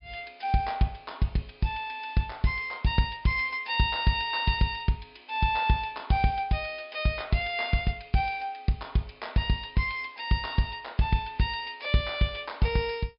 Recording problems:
treble cut off; nothing above 5.5 kHz

